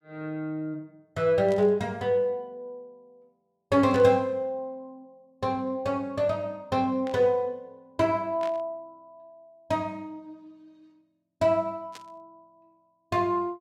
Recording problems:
static burst; 5 times, first at 1.5 s; peak -12 dB vs average level

